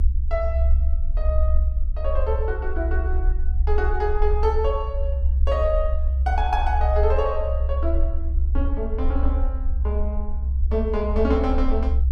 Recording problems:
rumble; below 66 Hz, SNR -3 dB

